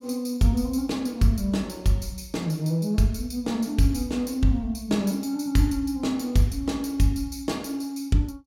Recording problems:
none

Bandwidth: 16.5 kHz